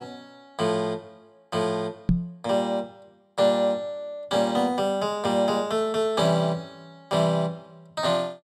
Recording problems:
microphone thump; at 2 s; peak +7 dB vs average level

